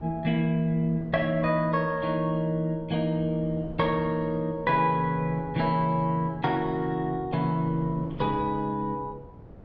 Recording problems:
wind noise; below 360 Hz, SNR 19 dB

